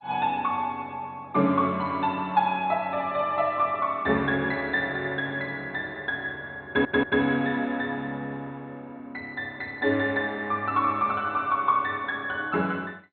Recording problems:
lossy codec; MP2, log-spectral distance 2 dB, nothing above 3.6 kHz
audio stuttering; at 6.5 s

